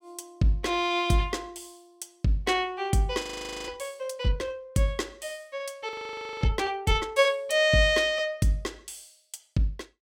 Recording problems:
frozen audio; at 3 s and at 6 s for 0.5 s

